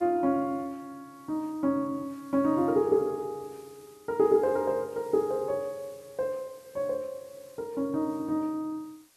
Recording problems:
background hiss; slope 0 dB per octave, SNR 28 dB

